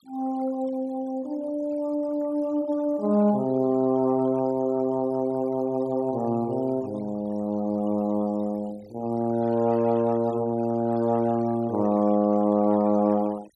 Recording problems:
denoising artefacts; signal-to-artefact ratio 25 dB

